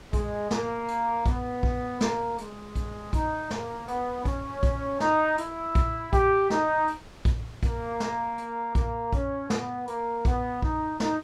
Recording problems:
wind on the microphone; below 1.6 kHz, SNR 22 dB

